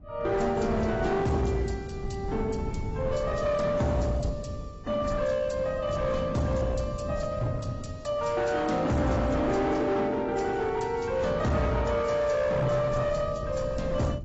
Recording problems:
lossy codec; AAC, log-spectral distance 3 dB, nothing above 7.8 kHz
distorted audio; hard clipping, uneven, signal-to-distortion ratio 10 dB
wind noise; below 170 Hz, SNR 11 dB

